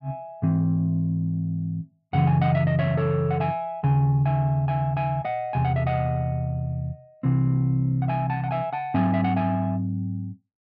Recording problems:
none

